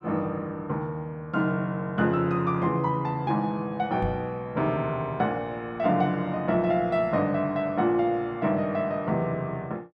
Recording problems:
microphone bump; at 4 s; peak -1 dB vs average level

